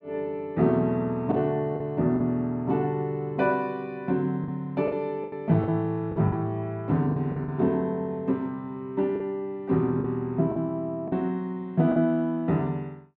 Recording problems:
lost packets; 6% of the sound replaced, filled with the last packet

